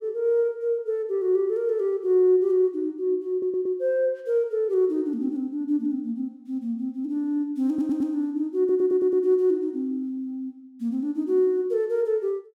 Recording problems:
audio stuttering; at 3.5 s, at 7.5 s and at 8.5 s

